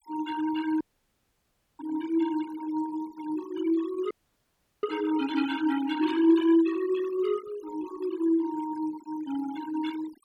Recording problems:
noise reduction artefacts; signal-to-artefact ratio 16 dB
dropout; at 1 s for 1 s and at 4 s for 0.5 s

